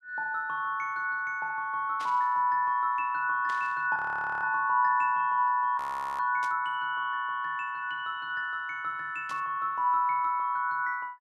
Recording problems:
static burst; 4 times, first at 2 s; peak -11 dB vs average level
frozen audio; at 4 s and at 6 s

